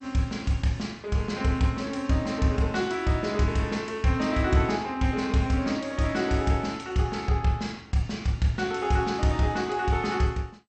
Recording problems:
codec artefacts; MP2, log-spectral distance 2 dB, nothing above 7.8 kHz

